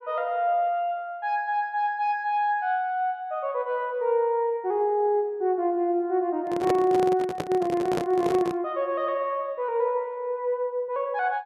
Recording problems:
handling noise; from 6.5 to 8.5 s; peak +2 dB vs average level

